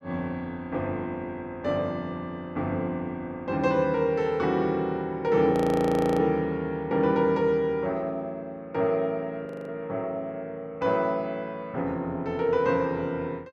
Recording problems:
frozen audio; at 5.5 s for 0.5 s and at 9.5 s

